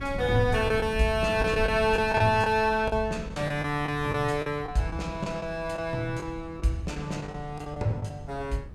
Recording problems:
wind noise; below 140 Hz, SNR 12 dB
packet loss; 8% of the sound replaced, filled with the last packet

